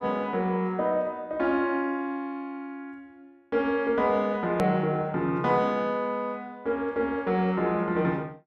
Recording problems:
hard cut with a click; at 4.5 s

